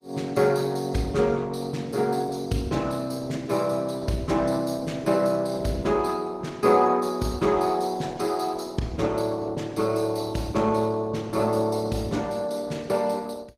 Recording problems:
lossy codec; Opus, log-spectral distance 4 dB, nothing above 15.5 kHz

